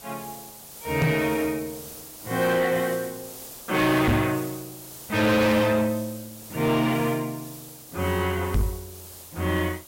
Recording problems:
distorted audio; soft clipping, signal-to-distortion ratio 7 dB
hiss; SNR 15 dB
knock on the microphone; at 1 s, at 4 s and at 8.5 s; peak +6 dB vs average level

